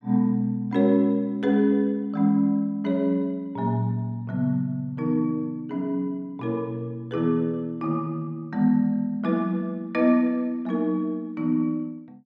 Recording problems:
none

